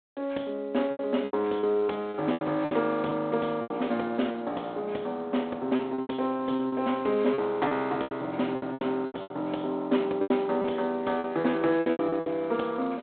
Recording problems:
phone line; 220 Hz to 3.6 kHz, G.726
lost packets; 13% of the sound replaced, filled with repeated pitch periods

